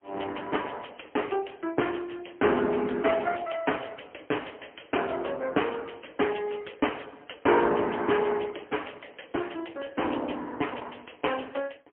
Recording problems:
telephone audio; 260 Hz to 3.3 kHz, AMR-NB, then MP3

